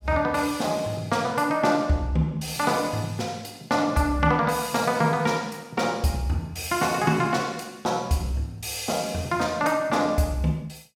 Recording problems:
none

